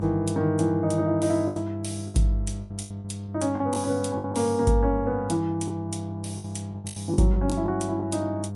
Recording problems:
lossy compression; MP3, log-spectral distance 2 dB, nothing above 11 kHz
hum; 50 Hz, harmonics up to 900 Hz, SNR 9 dB
lost packets; 9% of the sound replaced, filled with the last packet

